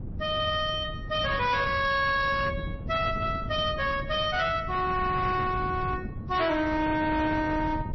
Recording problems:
lossy codec; MP3, log-spectral distance 3 dB, nothing above 4.9 kHz
distorted audio; hard clipping, signal-to-distortion ratio 11 dB
wind on the microphone; below 200 Hz, SNR 10 dB

